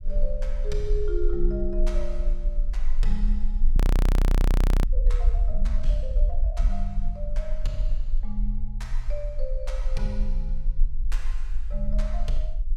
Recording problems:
rumble; below 38 Hz, strongest tone 30 Hz, SNR -8 dB
frozen audio; at 4 s for 1 s

